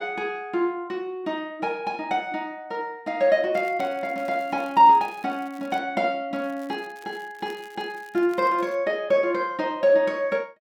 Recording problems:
crackle; from 3.5 to 6 s and from 6.5 to 9 s; loose cable, SNR 28 dB

